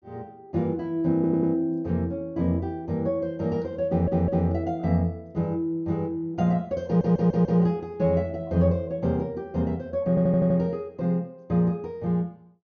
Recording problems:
low-pass filter; nothing above 6.6 kHz
audio stuttering; 4 times, first at 1 s

